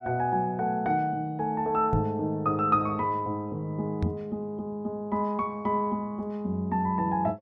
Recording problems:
microphone thump; at 2 s and at 4 s; peak +4 dB vs average level

